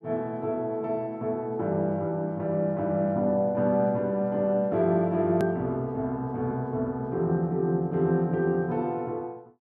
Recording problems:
click at an edit; at 5.5 s

